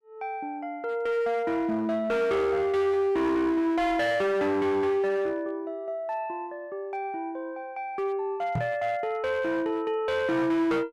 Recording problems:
distorted audio; hard clipping, uneven, signal-to-distortion ratio 11 dB
knock on the microphone; at 8.5 s; peak +1 dB vs average level

